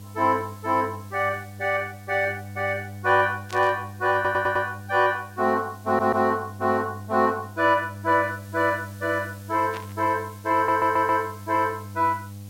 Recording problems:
hum; 50 Hz, harmonics up to 500 Hz, SNR 16 dB
hiss; slope +2 dB per octave, SNR 26 dB
burst of static; at 3.5 s and at 9.5 s; peak -9 dB vs average level
audio stuttering; at 4 s, at 6 s and at 11 s

